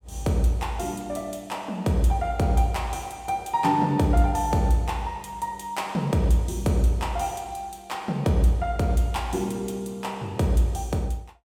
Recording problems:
none

